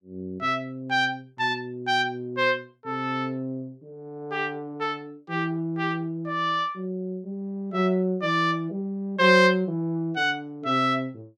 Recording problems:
none

